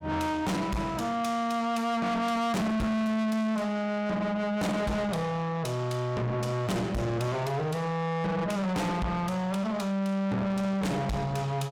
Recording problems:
distortion; soft clipping, signal-to-distortion ratio 6 dB

